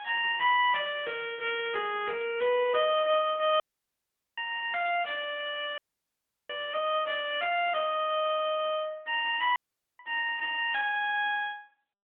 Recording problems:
telephone audio; 260 Hz to 3.4 kHz, AMR-NB
dropout; at 3.5 s for 1 s, at 6 s for 0.5 s and at 9.5 s

